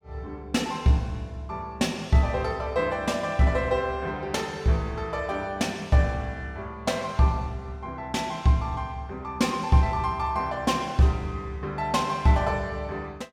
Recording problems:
none

